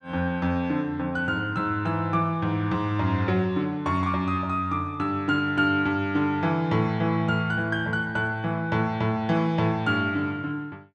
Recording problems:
none

